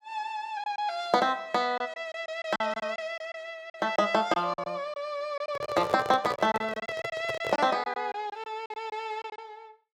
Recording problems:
packet loss; 10% of the sound replaced, filled with silence
microphone handling noise; from 5.5 to 7.5 s; peak -1 dB vs average level

